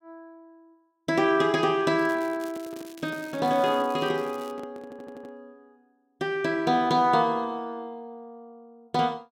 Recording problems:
handling noise; from 2 to 5.5 s; peak -9 dB vs average level
crackle; from 2 to 4.5 s; loose cable, SNR 24 dB
stutter; at 5 s

